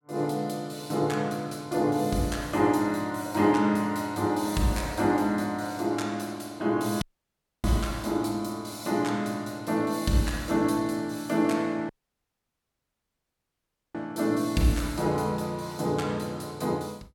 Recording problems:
audio cutting out; at 7 s for 0.5 s and at 12 s for 2 s

